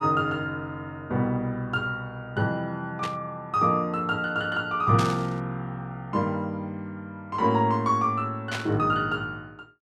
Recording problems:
burst of static; at 3 s, at 5 s and at 8.5 s; peak -1 dB vs average level

